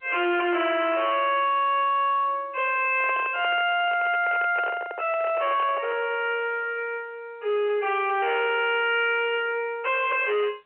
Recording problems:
telephone audio; 280 Hz to 3.1 kHz, G.711
distortion; hard clipping, signal-to-distortion ratio 6 dB
handling noise; from 3 to 6 s; peak -5 dB vs average level

